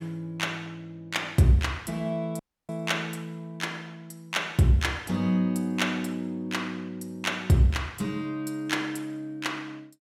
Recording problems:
audio cutting out; at 2.5 s

